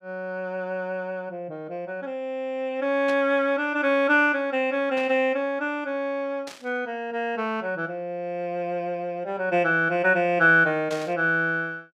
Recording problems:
burst of static; 4 times, first at 3 s; peak -9 dB vs average level

